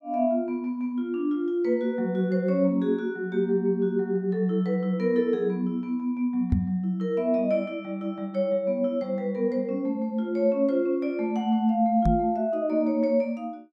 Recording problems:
microphone bump; at 6.5 s and at 12 s; peak +6 dB vs average level

